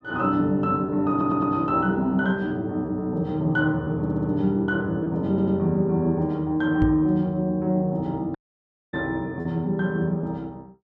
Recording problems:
packet loss; 1.7% of the sound replaced, filled with repeated pitch periods
audio stuttering; at 1 s, at 4 s and at 5.5 s
microphone thump; at 7 s; peak +2 dB vs average level
dropout; at 8.5 s for 0.5 s

